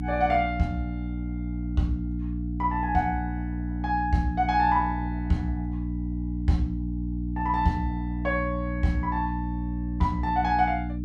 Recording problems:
hum; 60 Hz, harmonics up to 300 Hz, SNR 3 dB

